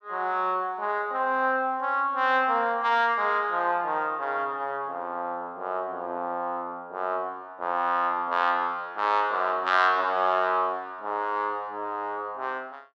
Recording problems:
none

